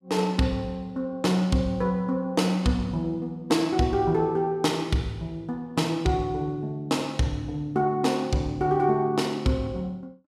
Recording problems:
none

